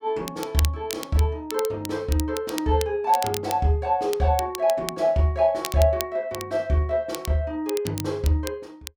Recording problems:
crackling; vinyl, SNR 12 dB

